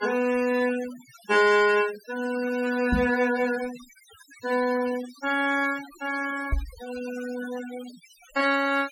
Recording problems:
denoising artefacts; signal-to-artefact ratio 16 dB
microphone thump; at 3 s and at 6.5 s; peak +3 dB vs average level

